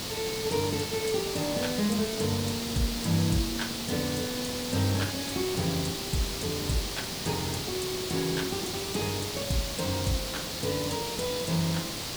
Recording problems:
background hiss; SNR 1 dB
crackle; vinyl, SNR 25 dB

